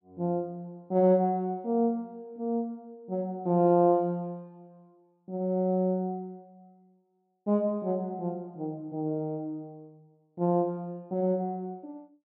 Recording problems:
none

